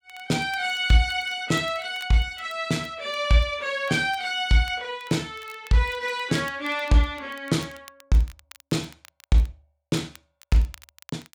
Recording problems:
crackle; vinyl, SNR 26 dB

